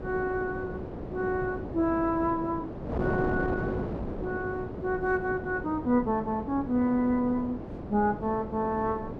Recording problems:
wind noise; below 510 Hz, SNR 7 dB

